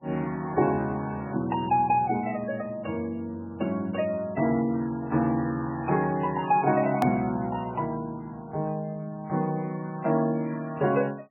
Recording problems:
codec artefacts; MP3, log-spectral distance 2 dB, nothing above 2.5 kHz
edit click; at 7 s

